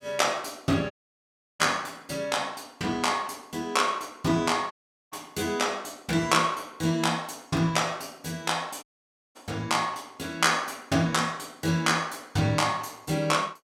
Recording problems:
audio cutting out; at 1 s for 0.5 s, at 4.5 s and at 9 s for 0.5 s

